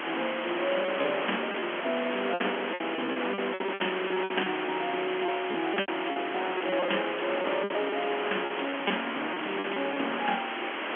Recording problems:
telephone audio; 240 Hz to 3.3 kHz, G.711
hiss; SNR 3 dB
wind on the microphone; below 1.9 kHz, SNR 7 dB
lost packets; 11% of the sound replaced, filled with repeated pitch periods

